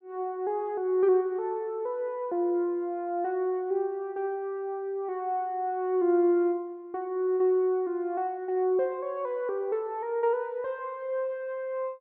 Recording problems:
none

